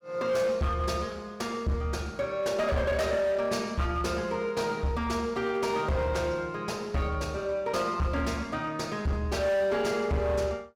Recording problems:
distortion; hard clipping, signal-to-distortion ratio 11 dB

